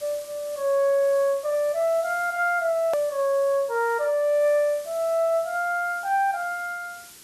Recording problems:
hiss; SNR 20 dB
hard cut with a click; at 3 s

